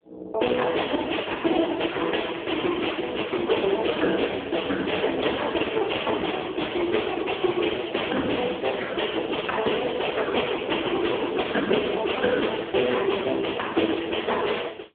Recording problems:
telephone audio; 240 Hz to 3.6 kHz, AMR-NB

